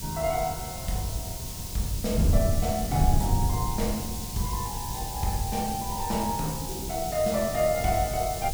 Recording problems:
background hiss; slope +8 dB per octave, SNR 6 dB
wind on the microphone; below 140 Hz, SNR 2 dB

